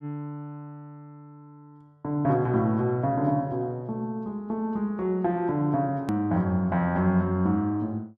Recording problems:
edit click; at 6 s

